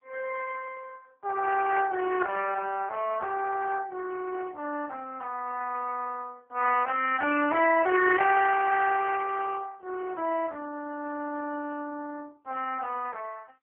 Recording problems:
telephone audio; 260 Hz to 2.9 kHz, AMR-NB

